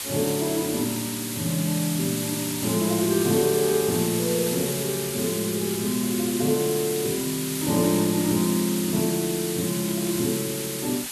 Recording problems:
hiss; slope +1 dB per octave, SNR 4 dB

